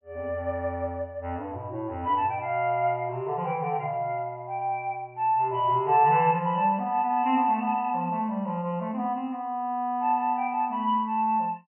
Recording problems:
treble cut off; nothing above 3 kHz

